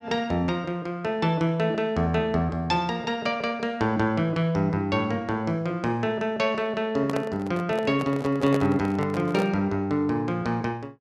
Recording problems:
handling noise; from 7 to 9.5 s; peak 0 dB vs average level

